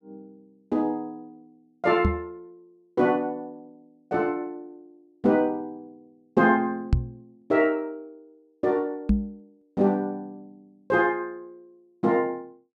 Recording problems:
microphone bump; at 2 s, at 7 s and at 9 s; peak +8 dB vs average level

